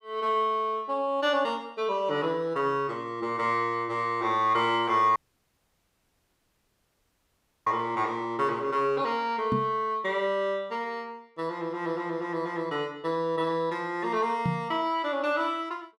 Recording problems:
dropout; at 5 s for 2.5 s
microphone bump; at 9.5 s and at 14 s; peak +3 dB vs average level

